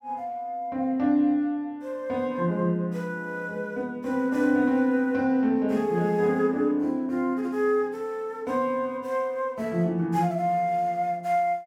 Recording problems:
none

